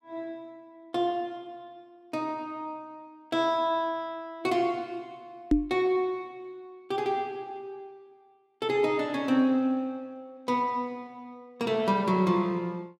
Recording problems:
knock on the microphone; at 5.5 s; peak +10 dB vs average level

